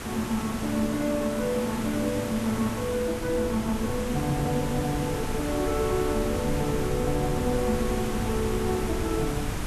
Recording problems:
background hiss; slope -5 dB per octave, SNR 6 dB
wind noise; below 98 Hz, SNR 9 dB

